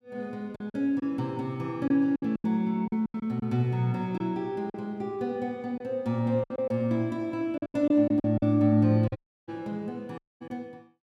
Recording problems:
packet loss; 9% of the sound replaced, filled with silence
audio cutting out; at 9 s and at 10 s

